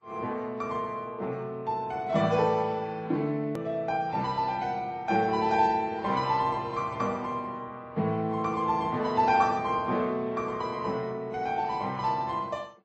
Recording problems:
lossy codec; Vorbis, then MP3, log-spectral distance 2 dB
click at an edit; at 3.5 s

